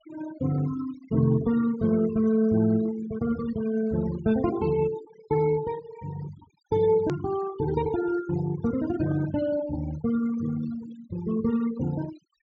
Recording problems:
treble missing; nothing above 7.5 kHz
denoising artefacts; signal-to-artefact ratio 15 dB
hard cut with a click; at 7 s

